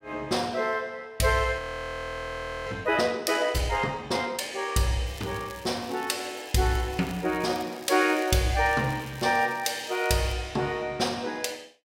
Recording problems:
audio freezing; at 1.5 s for 1 s
crackle; from 5 to 8 s and from 8 to 10 s; loose cable, SNR 20 dB

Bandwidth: 16 kHz